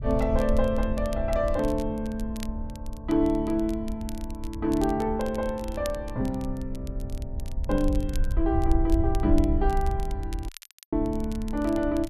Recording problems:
rumble; below 68 Hz, SNR 5 dB
crackling; vinyl, SNR 20 dB
dropout; at 10 s

